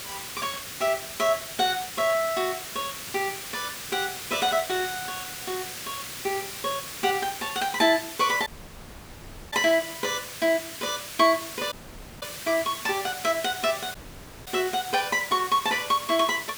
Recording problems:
background hiss; SNR 9 dB
dropout; at 8.5 s for 1 s, at 12 s for 0.5 s and at 14 s for 0.5 s

